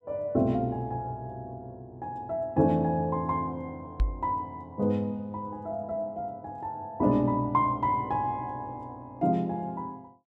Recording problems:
microphone thump; at 4 s; peak +5 dB vs average level

